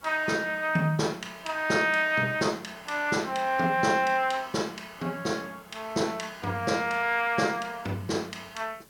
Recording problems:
hiss; SNR 27 dB

